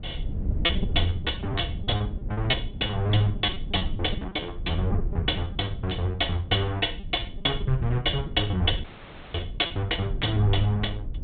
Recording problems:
treble cut off; nothing above 4 kHz
rumble; below 110 Hz, SNR 7 dB
packet loss; 15% of the sound replaced, filled with repeated pitch periods
audio cutting out; at 9 s for 0.5 s; filled with static

